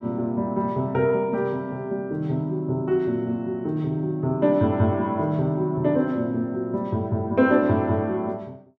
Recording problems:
none

